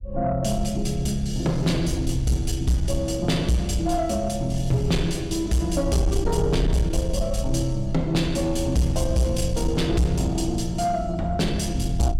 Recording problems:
distorted audio; soft clipping, signal-to-distortion ratio 11 dB
rumble; below 74 Hz, SNR 7 dB

